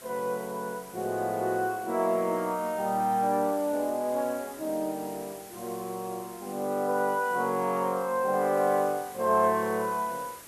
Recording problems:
background hiss; slope -3 dB per octave, SNR 17 dB

